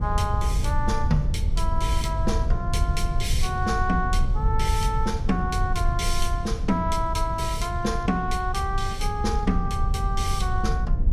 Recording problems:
rumble; below 80 Hz, SNR 0 dB

